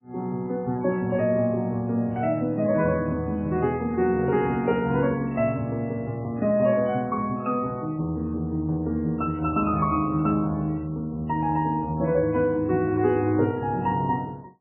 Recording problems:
codec artefacts; MP3, log-spectral distance 2 dB, nothing above 2.7 kHz

